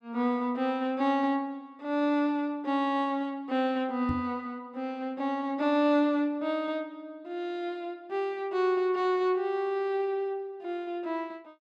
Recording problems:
knock on the microphone; at 4 s; peak -1 dB vs average level

